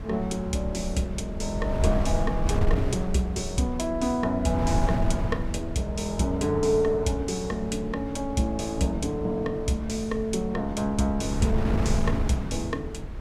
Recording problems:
wind noise; below 130 Hz, SNR 5 dB

